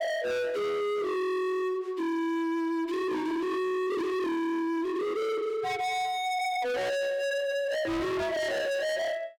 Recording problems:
distortion; hard clipping, signal-to-distortion ratio 6 dB

